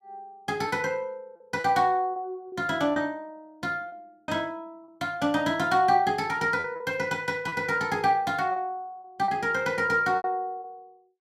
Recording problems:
packet loss; 6% of the sound replaced, filled with repeated pitch periods

